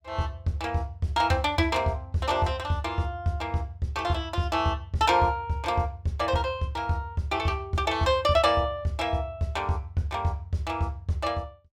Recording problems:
none

